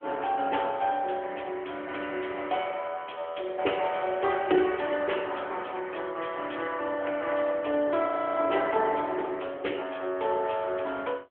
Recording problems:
phone line; 300 Hz to 3.3 kHz, AMR-NB
frozen audio; at 8 s

